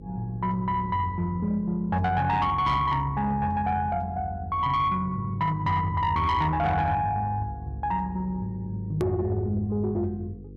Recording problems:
distortion; soft clipping, signal-to-distortion ratio 11 dB
hum; 50 Hz, harmonics up to 500 Hz, SNR 18 dB
click at an edit; at 9 s

